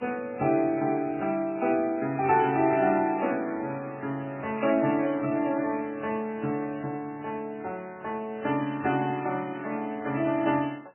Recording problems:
codec artefacts; MP3, then AAC, log-spectral distance 3 dB, nothing above 2.7 kHz

